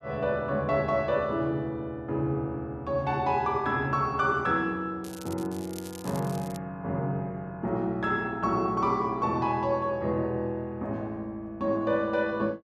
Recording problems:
crackling; from 5 to 6.5 s; loose cable, SNR 18 dB

